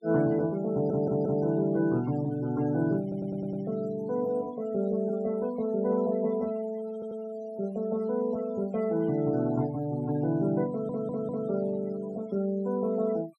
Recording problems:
noise reduction artefacts; signal-to-artefact ratio 21 dB
stutter; 4 times, first at 0.5 s

